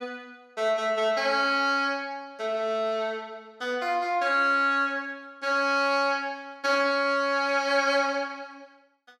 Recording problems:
none

